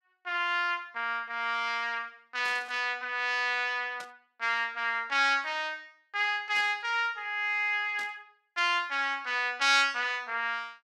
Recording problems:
static burst; 4 times, first at 2.5 s; peak -11 dB vs average level

